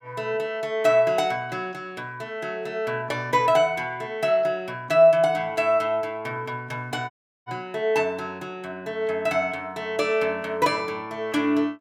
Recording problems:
dropout; at 7 s

